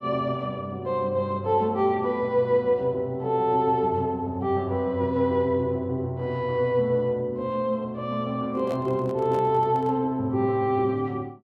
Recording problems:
handling noise; from 8.5 to 10 s; peak -9 dB vs average level

